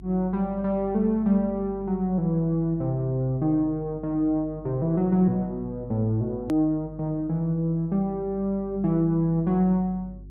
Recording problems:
hum; 50 Hz, harmonics up to 400 Hz, SNR 20 dB
click at an edit; at 6.5 s

